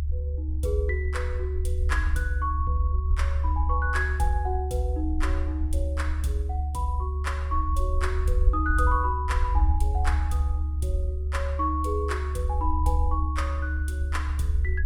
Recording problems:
low-frequency rumble; below 74 Hz, strongest tone 72 Hz, SNR -3 dB

